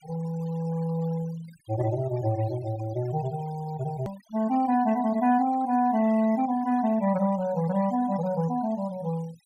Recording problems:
noise reduction artefacts; signal-to-artefact ratio 21 dB
hard cut with a click; at 4 s

